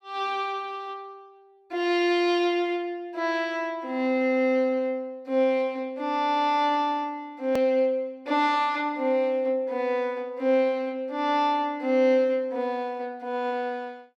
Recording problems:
edit click; at 7.5 s

